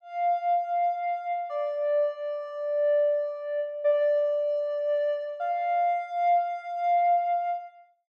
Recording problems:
none

